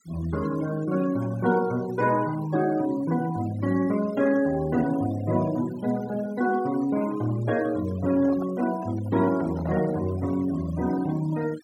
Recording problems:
denoising artefacts; signal-to-artefact ratio 19 dB
microphone handling noise; from 8 to 10 s; peak -7 dB vs average level

